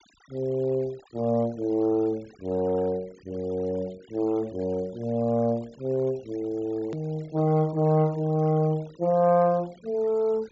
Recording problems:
low-pass filter; nothing above 8 kHz
denoising artefacts; signal-to-artefact ratio 26 dB
hard cut with a click; at 7 s

